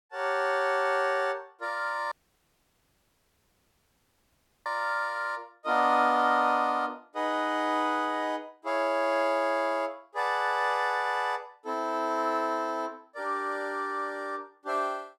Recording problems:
dropout; at 2 s for 2.5 s

